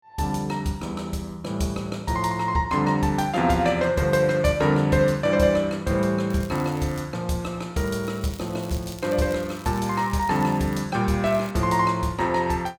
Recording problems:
crackling; at 6.5 s, from 8 to 11 s and at 11 s; loose cable, SNR 22 dB

